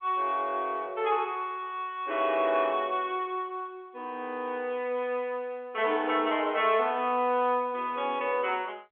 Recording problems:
phone line; 220 Hz to 3.4 kHz, G.711

